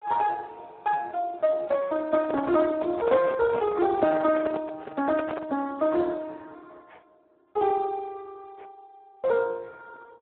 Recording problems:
telephone audio; 150 Hz to 2.1 kHz, Speex
handling noise; from 2 to 5.5 s; peak -2 dB vs average level

